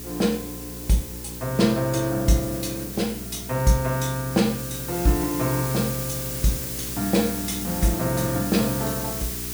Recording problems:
hum; 60 Hz, harmonics up to 420 Hz, SNR 13 dB
background hiss; slope +2 dB per octave, SNR 7 dB

